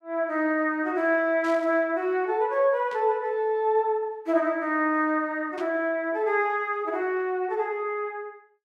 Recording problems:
static burst; at 1.5 s, at 3 s and at 5.5 s; peak -14 dB vs average level

